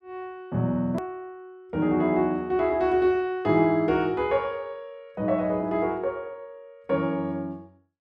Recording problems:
click at an edit; at 1 s

